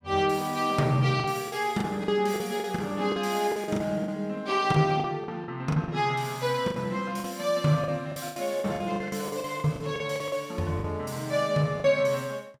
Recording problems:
lost packets; 12% of the sound replaced, filled with the last packet

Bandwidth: 16.5 kHz